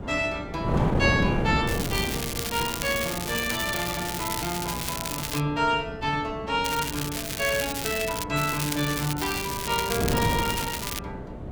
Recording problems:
hum; 60 Hz, harmonics up to 720 Hz, SNR 15 dB
wind on the microphone; below 410 Hz, SNR 5 dB
crackle; from 1.5 to 5.5 s, from 6.5 to 8 s and from 8.5 to 11 s; loose cable, SNR 4 dB

